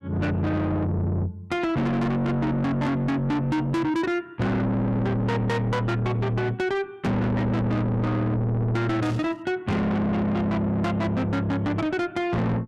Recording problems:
distorted audio; soft clipping, signal-to-distortion ratio 7 dB
burst of static; at 9 s; peak -14 dB vs average level

